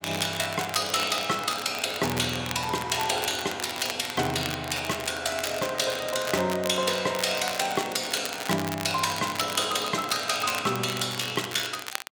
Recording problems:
crackle; vinyl, SNR 9 dB

